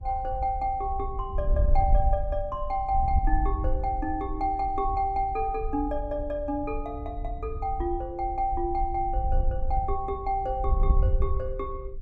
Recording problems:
wind on the microphone; below 60 Hz, SNR 2 dB

